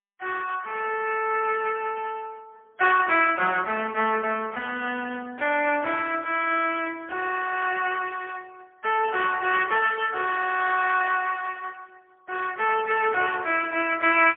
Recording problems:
telephone audio; 340 Hz to 3.3 kHz, AMR-NB, then MP3

